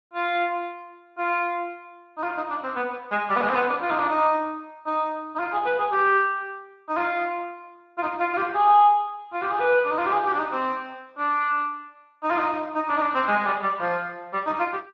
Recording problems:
codec artefacts; Speex, log-spectral distance 2 dB

